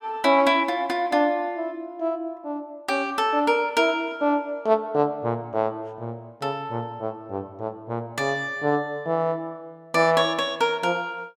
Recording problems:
none

